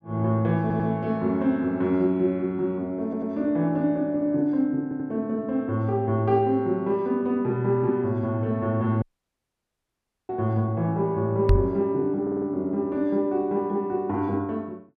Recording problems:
audio stuttering; 4 times, first at 0.5 s
audio cutting out; at 9 s for 1.5 s
knock on the microphone; at 11 s; peak +8 dB vs average level

